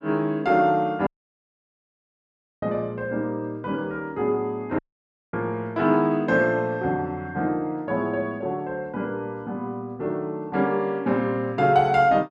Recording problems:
audio cutting out; at 1 s for 1.5 s and at 5 s for 0.5 s

